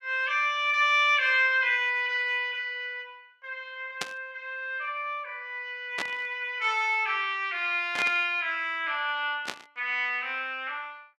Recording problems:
static burst; 4 times, first at 4 s; peak 0 dB vs average level

